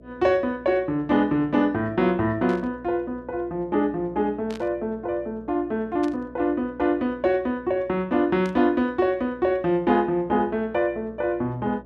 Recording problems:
hum; 60 Hz, harmonics up to 660 Hz, SNR 24 dB
static burst; 4 times, first at 2.5 s; peak -13 dB vs average level

